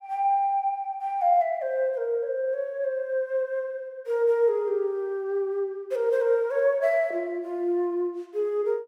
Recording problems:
none

